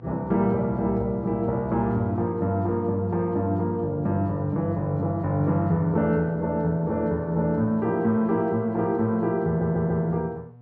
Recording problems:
hum; 60 Hz, harmonics up to 960 Hz, SNR 22 dB
stutter; at 9.5 s

